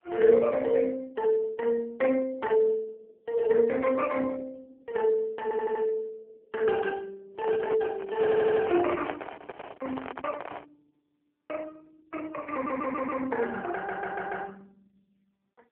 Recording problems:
phone line; 300 Hz to 3.2 kHz, AMR-NB
audio stuttering; 4 times, first at 5.5 s
handling noise; from 7.5 to 11 s; peak -4 dB vs average level

